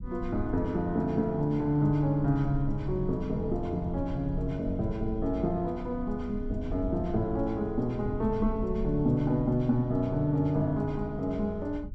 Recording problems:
low-frequency rumble; below 72 Hz, SNR 11 dB

